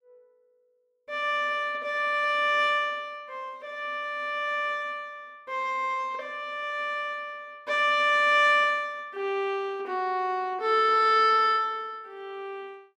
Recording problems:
none

